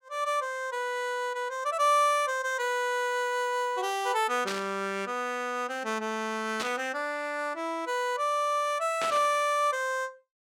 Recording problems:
static burst; at 4.5 s, at 6.5 s and at 9 s; peak -1 dB vs average level

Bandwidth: 17 kHz